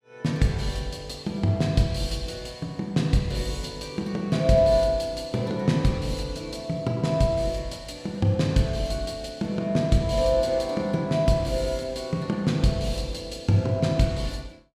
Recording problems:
none

